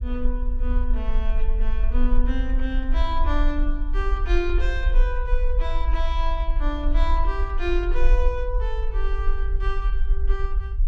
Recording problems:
low-frequency rumble; below 44 Hz, strongest tone 20 Hz, SNR -5 dB

